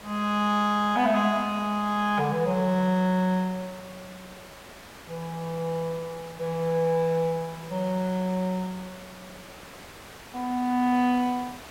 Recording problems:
hiss; slope -3 dB per octave, SNR 18 dB

